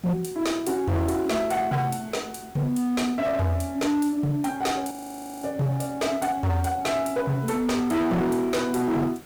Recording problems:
distorted audio; hard clipping, signal-to-distortion ratio 7 dB
hiss; slope -4 dB per octave, SNR 23 dB
audio freezing; at 5 s for 0.5 s

